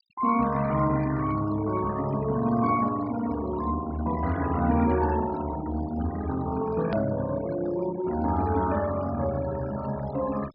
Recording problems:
treble cut off; nothing above 5.5 kHz
noise reduction artefacts; signal-to-artefact ratio 14 dB
click at an edit; at 7 s

